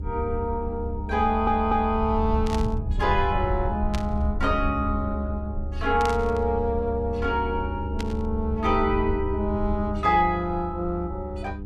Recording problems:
electrical hum; 50 Hz, harmonics up to 900 Hz, SNR 13 dB
low-frequency rumble; below 72 Hz, SNR 5 dB
audio stuttering; at 1 s
static burst; 4 times, first at 2.5 s; peak -4 dB vs average level

